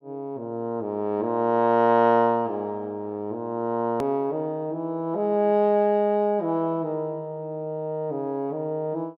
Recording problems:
click at an edit; at 4 s

